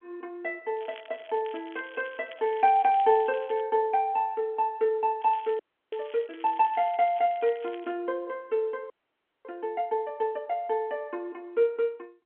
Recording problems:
phone line; 260 Hz to 3.5 kHz, G.711
crackling; from 1 to 3.5 s and from 5 to 8 s; loose cable, SNR 23 dB
audio freezing; at 5.5 s and at 9 s for 0.5 s

